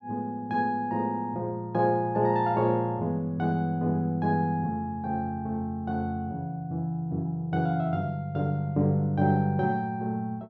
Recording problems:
none

